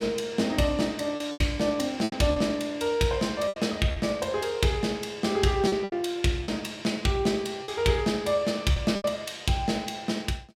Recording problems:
packet loss; 7% of the sound replaced, filled with repeated pitch periods

